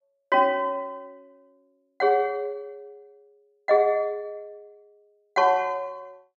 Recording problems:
none

